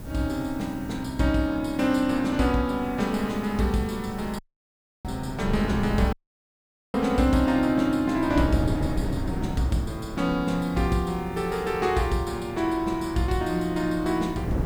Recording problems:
background hiss; slope +1 dB per octave, SNR 28 dB
wind noise; below 250 Hz, SNR 10 dB
dropout; at 4.5 s for 0.5 s and at 6 s for 1 s

